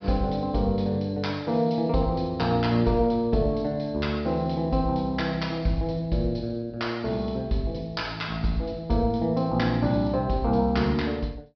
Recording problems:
low-pass filter; nothing above 5.5 kHz

